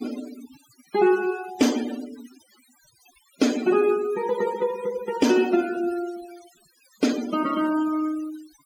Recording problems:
denoising artefacts; signal-to-artefact ratio 14 dB

